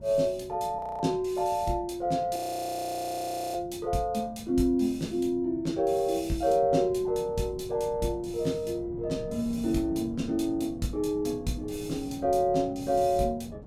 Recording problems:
wind noise; below 250 Hz, SNR 16 dB
audio freezing; at 1 s and at 2.5 s for 1 s

